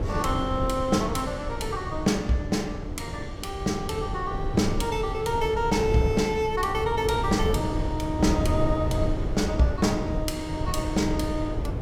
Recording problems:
wind noise; below 220 Hz, SNR 4 dB

